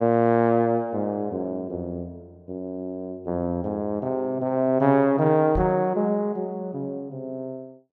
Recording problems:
microphone bump; at 5.5 s; peak -2 dB vs average level

